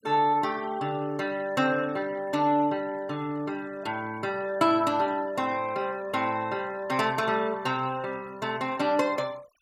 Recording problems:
denoising artefacts; signal-to-artefact ratio 23 dB

